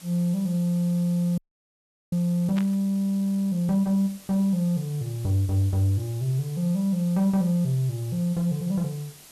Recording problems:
hiss; slope -1 dB per octave, SNR 21 dB
frozen audio; at 1.5 s for 0.5 s
burst of static; at 2.5 s; peak -9 dB vs average level

